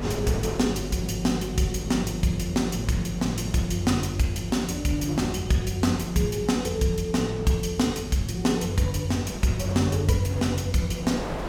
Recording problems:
electrical hum; 50 Hz, harmonics up to 550 Hz, SNR 11 dB
wind noise; below 1 kHz, SNR 17 dB

